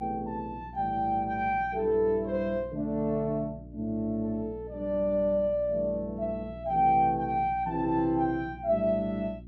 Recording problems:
hum; 60 Hz, harmonics up to 360 Hz, SNR 17 dB

